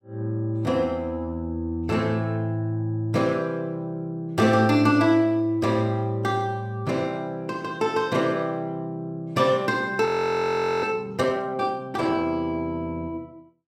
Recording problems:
audio freezing; at 10 s for 1 s

